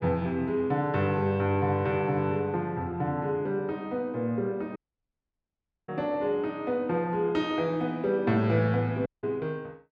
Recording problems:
dropout; at 5 s for 1 s and at 9 s

